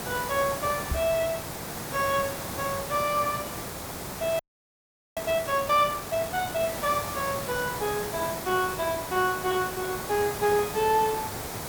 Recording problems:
background hiss; SNR 6 dB
microphone thump; at 1 s; peak +1 dB vs average level
audio freezing; at 4.5 s for 1 s

